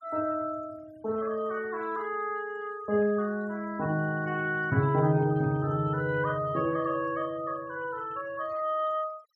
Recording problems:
noise reduction artefacts; signal-to-artefact ratio 26 dB

